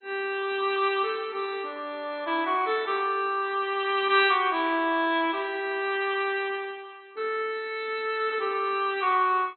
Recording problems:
codec artefacts; MP2, log-spectral distance 4 dB, nothing above 3.6 kHz

